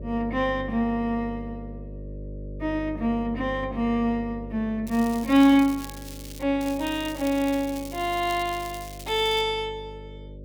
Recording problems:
electrical hum; 50 Hz, harmonics up to 600 Hz, SNR 15 dB
crackle; from 5 to 6.5 s and from 6.5 to 9.5 s; loose cable, SNR 17 dB

